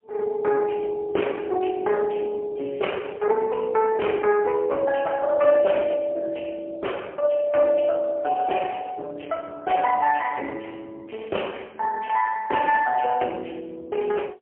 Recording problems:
phone line; 320 Hz to 3.1 kHz, AMR-NB, then MP3

